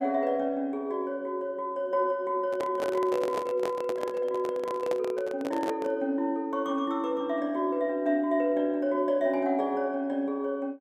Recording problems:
microphone handling noise; from 2.5 to 6 s; peak -1 dB vs average level

